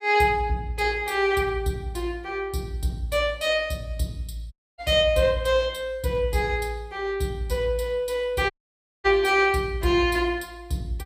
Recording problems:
audio cutting out; at 4.5 s and at 8.5 s for 0.5 s

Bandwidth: 15 kHz